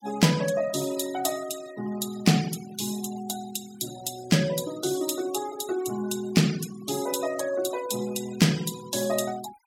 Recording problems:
denoising artefacts; signal-to-artefact ratio 14 dB

